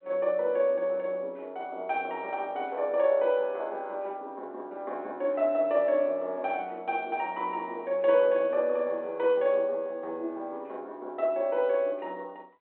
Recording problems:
phone line; 280 Hz to 3.4 kHz, G.726

